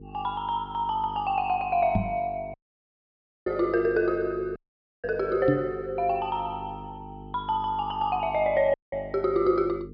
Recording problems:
treble cut off; nothing above 5.5 kHz
hum; 50 Hz, harmonics up to 450 Hz, SNR 17 dB
knock on the microphone; at 2 s and at 5.5 s; peak +6 dB vs average level
dropout; at 2.5 s for 1 s, at 4.5 s and at 8.5 s

